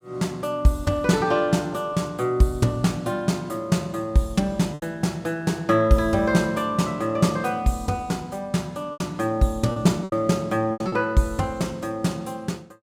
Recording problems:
lost packets; 3% of the sound replaced, filled with repeated pitch periods

